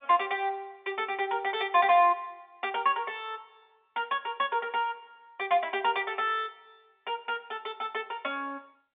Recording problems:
telephone audio; 240 Hz to 3.6 kHz, G.711

